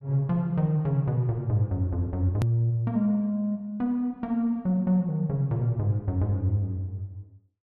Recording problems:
edit click; at 2.5 s

